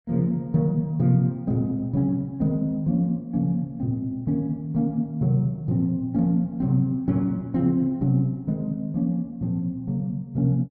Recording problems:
none

